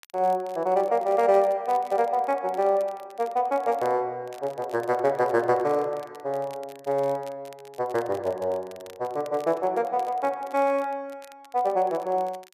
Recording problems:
crackle; vinyl, SNR 26 dB

